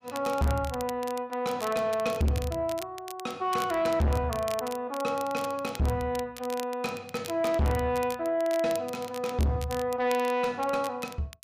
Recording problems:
distortion; soft clipping, signal-to-distortion ratio 6 dB
crackling; vinyl, SNR 15 dB

